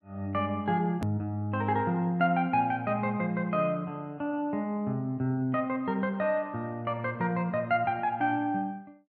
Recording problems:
edit click; at 1 s

